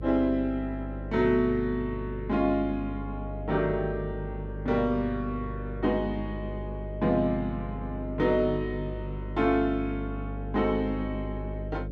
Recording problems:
electrical hum; 50 Hz, harmonics up to 600 Hz, SNR 8 dB

